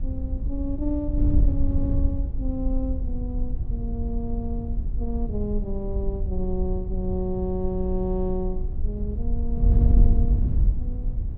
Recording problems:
wind noise; below 70 Hz, SNR -4 dB

